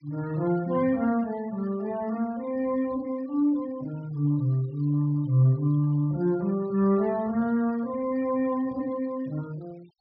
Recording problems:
treble missing; nothing above 5.5 kHz
denoising artefacts; signal-to-artefact ratio 27 dB

